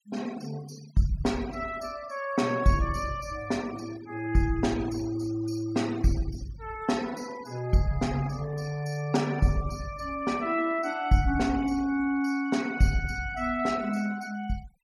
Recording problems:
denoising artefacts; signal-to-artefact ratio 19 dB

